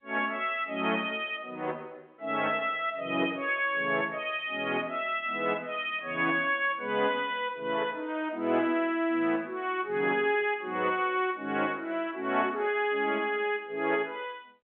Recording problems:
phone line; 220 Hz to 3.6 kHz, G.711

